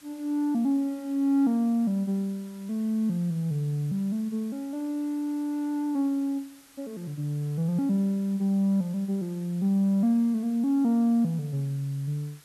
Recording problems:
hiss; slope 0 dB per octave, SNR 26 dB

